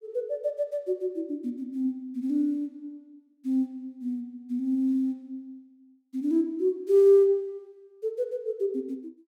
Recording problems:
none

